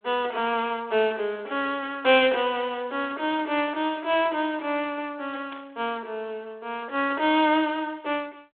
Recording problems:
telephone audio; 280 Hz to 3.6 kHz, G.726
static burst; at 5.5 s; peak -12 dB vs average level

